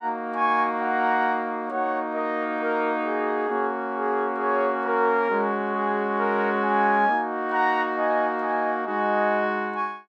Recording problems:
none

